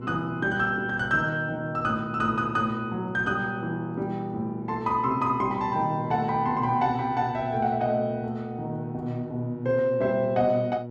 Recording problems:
electrical hum; 60 Hz, harmonics up to 960 Hz, SNR 10 dB

